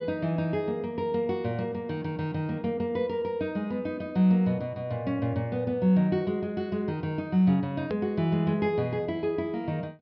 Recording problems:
treble missing; nothing above 5.5 kHz
click at an edit; at 8 s

